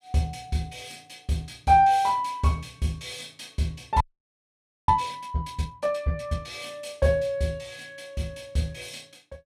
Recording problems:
audio freezing; at 4 s for 1 s

